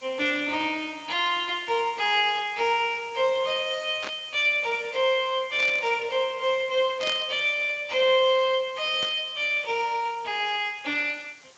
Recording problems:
codec artefacts; Speex, log-spectral distance 7 dB
hiss; slope -1 dB per octave, SNR 27 dB
burst of static; 4 times, first at 4 s; peak -5 dB vs average level

